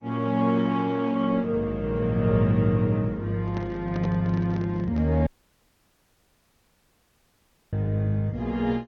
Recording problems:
codec artefacts; MP2, then Opus, log-spectral distance 2 dB
handling noise; from 3.5 to 5 s; peak -5 dB vs average level
dropout; at 5.5 s for 2.5 s

